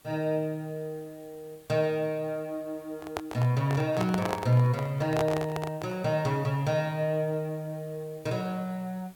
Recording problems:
background hiss; slope -2 dB per octave, SNR 27 dB
handling noise; from 3 to 6 s; peak +3 dB vs average level

